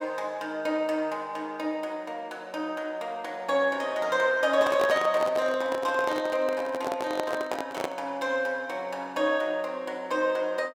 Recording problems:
handling noise; from 4.5 to 8 s; peak +1 dB vs average level

